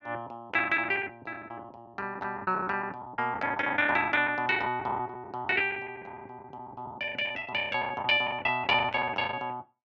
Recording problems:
lost packets; 17% of the sound replaced, filled with the last packet

